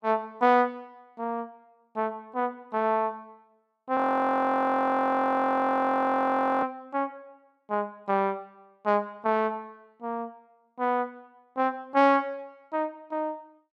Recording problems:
audio freezing; at 4 s for 2.5 s

